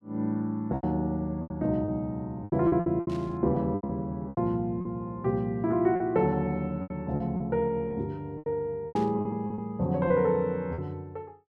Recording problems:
lost packets; 11% of the sound replaced, filled with repeated pitch periods
burst of static; at 3 s and at 9 s; peak -13 dB vs average level

